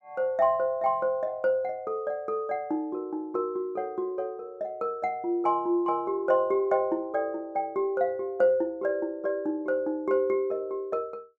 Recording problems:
none

